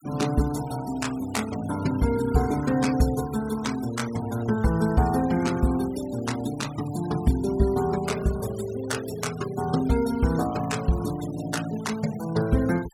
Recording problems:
denoising artefacts; signal-to-artefact ratio 17 dB

